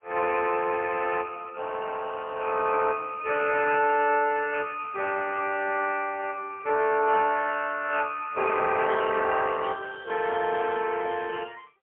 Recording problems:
telephone audio; 340 Hz to 3.1 kHz, AMR-NB, then MP3

